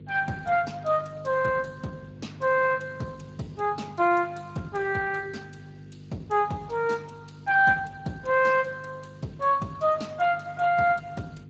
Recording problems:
lossy codec; Speex, then Speex, log-spectral distance 4 dB
hum; 50 Hz, harmonics up to 500 Hz, SNR 19 dB

